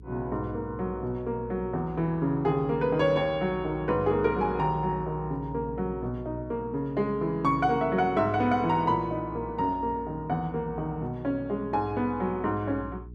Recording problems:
hum; 60 Hz, harmonics up to 420 Hz, SNR 17 dB

